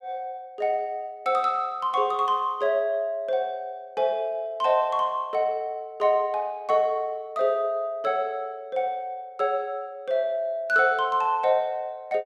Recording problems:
none

